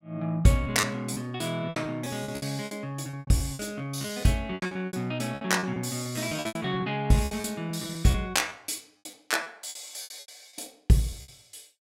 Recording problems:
packet loss; 17% of the sound replaced, filled with repeated pitch periods

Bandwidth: 16 kHz